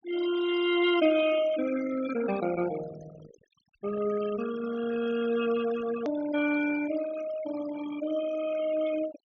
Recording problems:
low-pass filter; nothing above 6.6 kHz
noise reduction artefacts; signal-to-artefact ratio 12 dB
click at an edit; at 6 s

